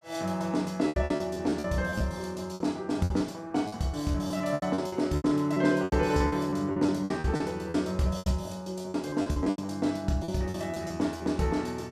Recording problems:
lost packets; 15% of the sound replaced, filled with repeated pitch periods

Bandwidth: 14.5 kHz